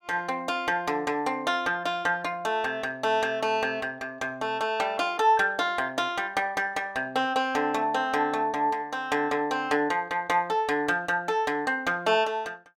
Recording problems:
none

